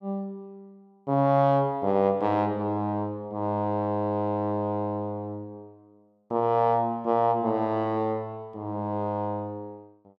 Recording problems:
none

